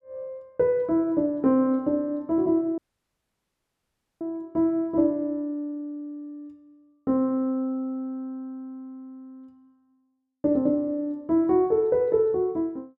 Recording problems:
audio cutting out; at 3 s for 1.5 s

